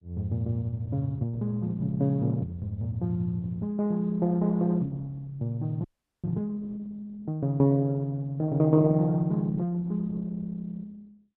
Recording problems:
codec artefacts; Opus, log-spectral distance 2 dB
audio freezing; at 6 s

